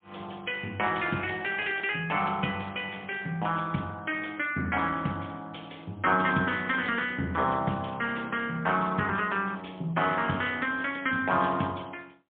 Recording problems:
phone line; 130 Hz to 3.4 kHz, AMR-NB, then MP3

